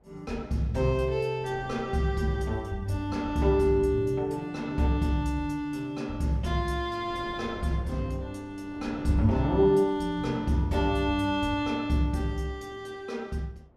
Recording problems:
wind noise; below 470 Hz, SNR 20 dB

